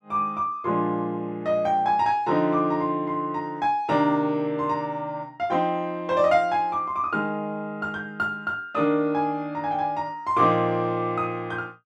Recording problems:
none

